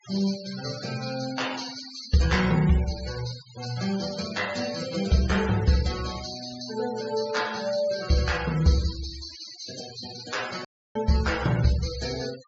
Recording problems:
treble missing; nothing above 8 kHz
noise reduction artefacts; signal-to-artefact ratio 13 dB
dropout; at 11 s

